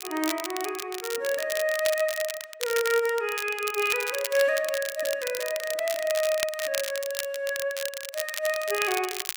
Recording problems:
crackling; vinyl, SNR 6 dB

